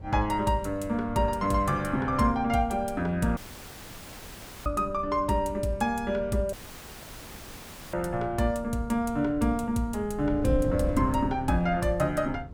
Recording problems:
wind on the microphone; below 140 Hz, SNR 13 dB
dropout; at 3.5 s for 1.5 s and at 6.5 s for 1.5 s

